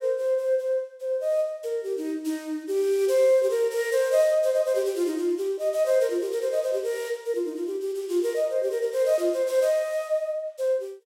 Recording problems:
none

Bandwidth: 16 kHz